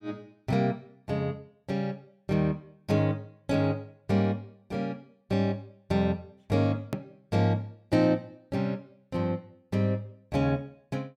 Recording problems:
click at an edit; at 7 s

